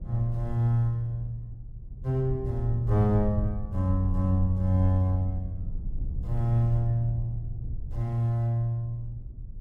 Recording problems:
low-frequency rumble; below 80 Hz, SNR 9 dB

